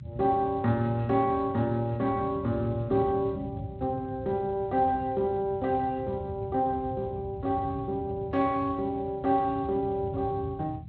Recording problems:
lossy compression; Speex, log-spectral distance 2 dB
low-frequency rumble; below 150 Hz, SNR 12 dB

